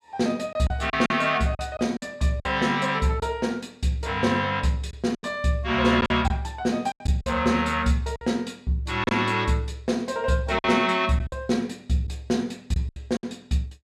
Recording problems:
lost packets; 7% of the sound replaced, filled with silence

